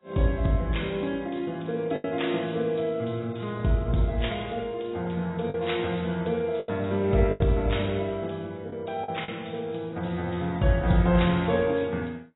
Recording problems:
lossy compression; AAC, log-spectral distance 5 dB, nothing above 3.8 kHz
packet loss; 3% of the sound replaced, filled with the last packet

